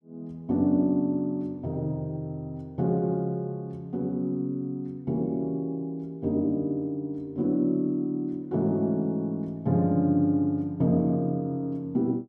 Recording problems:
none

